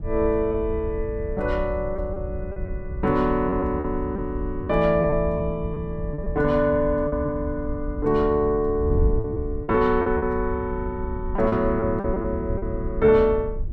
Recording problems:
wind noise; below 86 Hz, SNR 8 dB
packet loss; 7% of the sound replaced, filled with repeated pitch periods

